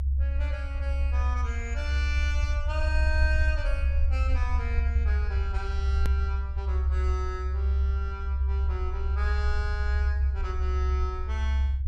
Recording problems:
rumble; below 70 Hz, strongest tone 68 Hz, SNR -9 dB
hard cut with a click; at 6 s

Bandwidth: 14.5 kHz